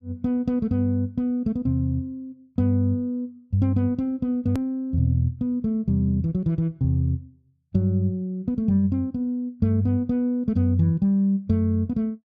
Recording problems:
click at an edit; at 4.5 s

